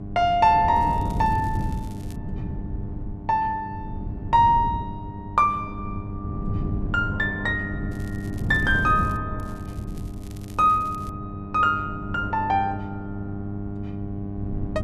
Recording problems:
electrical hum; 50 Hz, harmonics up to 800 Hz, SNR 12 dB
wind noise; below 180 Hz, SNR 10 dB
crackling; from 1 to 2 s, from 8 to 9 s and from 9.5 to 11 s; loose cable, SNR 28 dB

